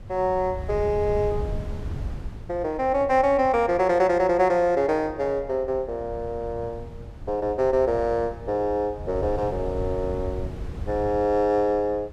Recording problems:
wind noise; below 130 Hz, SNR 13 dB

